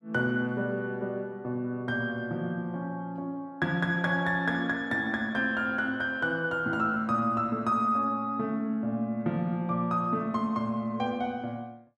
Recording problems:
none

